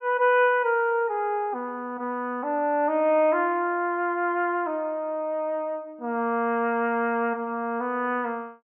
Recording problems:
low-pass filter; nothing above 3.1 kHz

